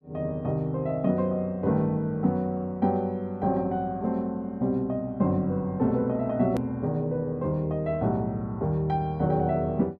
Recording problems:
click at an edit; at 6.5 s

